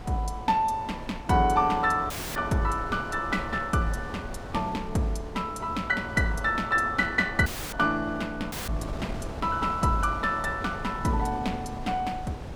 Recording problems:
wind on the microphone; below 490 Hz, SNR 12 dB
audio cutting out; at 2 s, at 7.5 s and at 8.5 s; filled with static

